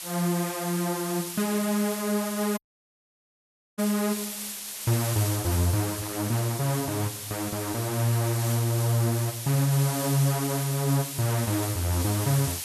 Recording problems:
hiss; slope +2 dB per octave, SNR 6 dB
audio cutting out; at 2.5 s for 1 s

